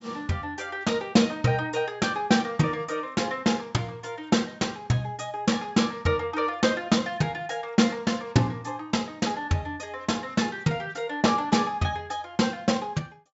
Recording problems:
low-pass filter; nothing above 8 kHz

